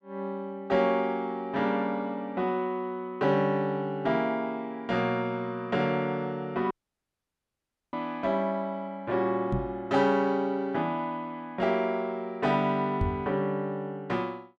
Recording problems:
audio cutting out; at 6.5 s for 1 s
knock on the microphone; at 9.5 s and at 13 s; peak +3 dB vs average level

